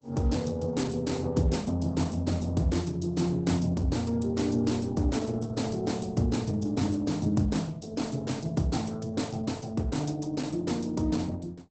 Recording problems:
lossy compression; Opus, log-spectral distance 4 dB, nothing above 8 kHz

